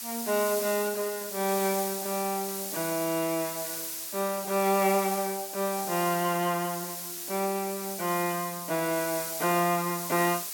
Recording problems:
background hiss; slope +2 dB per octave, SNR 5 dB

